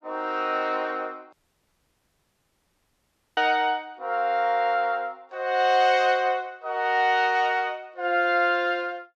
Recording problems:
audio cutting out; at 1.5 s for 2 s

